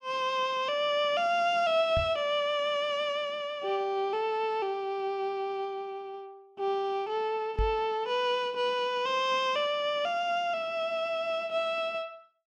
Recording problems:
knock on the microphone; at 2 s and at 7.5 s; peak +1 dB vs average level

